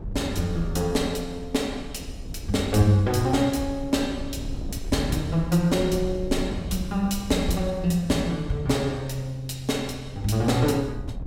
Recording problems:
wind noise; below 120 Hz, SNR 12 dB

